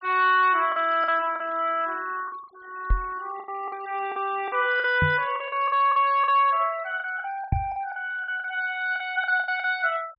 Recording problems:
low-pass filter; nothing above 5 kHz
noise reduction artefacts; signal-to-artefact ratio 24 dB
lost packets; 11% of the sound replaced, filled with the last packet
microphone bump; at 3 s, at 5 s and at 7.5 s; peak +3 dB vs average level

